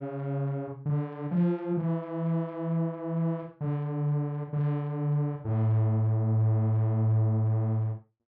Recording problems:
none

